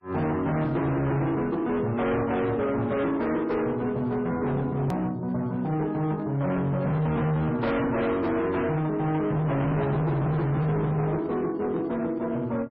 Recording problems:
codec artefacts; MP3, log-spectral distance 2 dB, nothing above 13.1 kHz
distorted audio; hard clipping, signal-to-distortion ratio 8 dB
hard cut with a click; at 5 s

